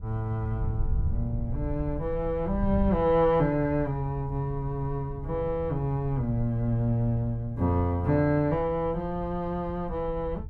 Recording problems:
wind noise; below 92 Hz, SNR 9 dB

